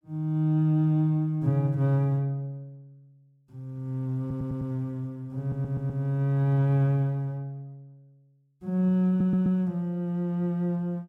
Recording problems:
audio stuttering; at 4 s, at 5.5 s and at 9 s

